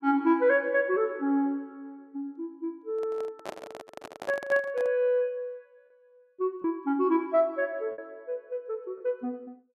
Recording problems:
packet loss; 1.8% of the sound replaced, filled with repeated pitch periods
microphone handling noise; from 3 to 5 s; peak -4 dB vs average level

